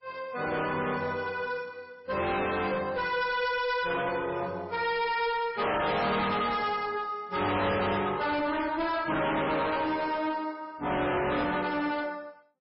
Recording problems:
lossy compression; MP3, log-spectral distance 4 dB, nothing above 5.3 kHz
distorted audio; hard clipping, uneven, signal-to-distortion ratio 6 dB

